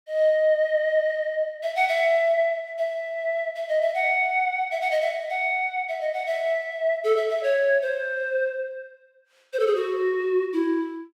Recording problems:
none

